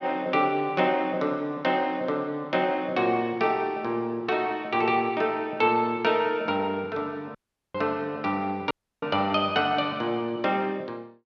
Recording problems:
audio cutting out; at 7.5 s and at 8.5 s

